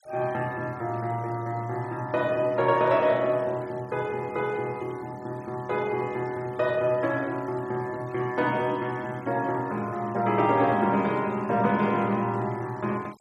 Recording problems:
denoising artefacts; signal-to-artefact ratio 25 dB

